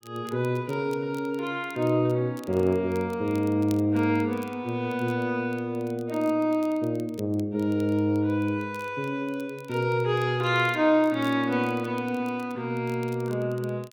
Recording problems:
crackling; vinyl, SNR 27 dB

